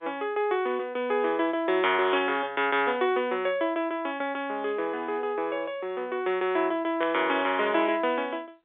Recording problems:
telephone audio; 280 Hz to 3.6 kHz, G.711
burst of static; at 7 s; peak -5 dB vs average level

